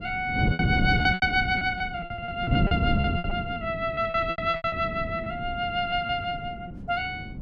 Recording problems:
wind on the microphone; below 230 Hz, SNR 4 dB
lost packets; 15% of the sound replaced, filled with repeated pitch periods

